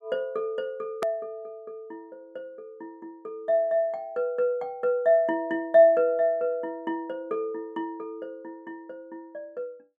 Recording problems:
edit click; at 1 s

